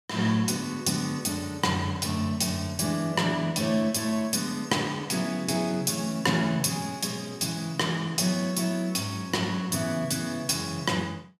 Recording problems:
none

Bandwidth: 14.5 kHz